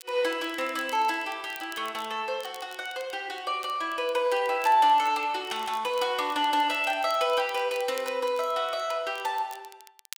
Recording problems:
crackle; vinyl, SNR 22 dB

